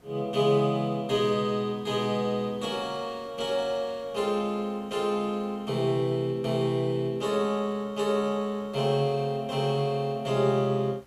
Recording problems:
background hiss; slope -6 dB per octave, SNR 29 dB

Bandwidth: 15 kHz